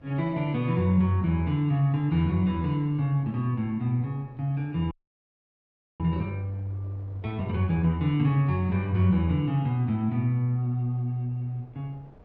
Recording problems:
wind on the microphone; below 510 Hz, SNR 27 dB
audio freezing; at 5 s for 1 s

